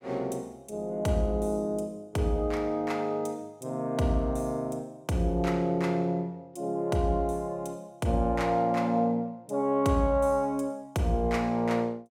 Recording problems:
none

